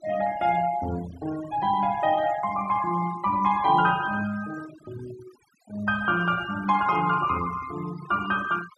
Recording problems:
noise reduction artefacts; signal-to-artefact ratio 18 dB

